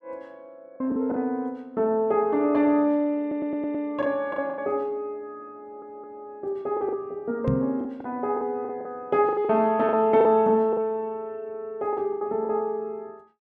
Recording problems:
lost packets; 8% of the sound replaced, filled with the last packet
stutter; at 3 s and at 5.5 s
knock on the microphone; at 7.5 s; peak +4 dB vs average level

